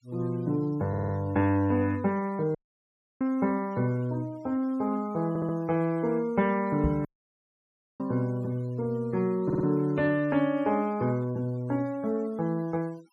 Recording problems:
noise reduction artefacts; signal-to-artefact ratio 26 dB
audio stuttering; at 1 s, at 5.5 s and at 9.5 s
audio cutting out; at 2.5 s for 0.5 s and at 7 s for 1 s
microphone thump; at 7 s; peak +3 dB vs average level

